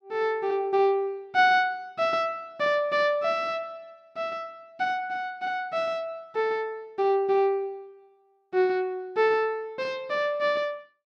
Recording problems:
none

